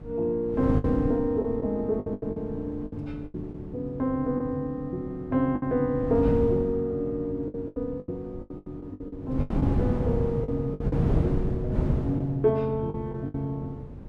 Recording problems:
wind on the microphone; below 240 Hz, SNR 3 dB
lost packets; 10% of the sound replaced, filled with the last packet

